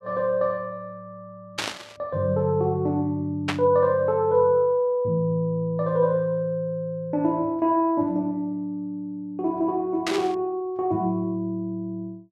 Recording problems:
static burst; at 1.5 s, at 3.5 s and at 10 s; peak +2 dB vs average level

